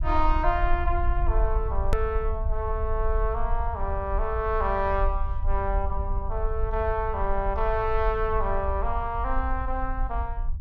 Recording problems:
rumble; below 54 Hz, SNR 2 dB
edit click; at 2 s

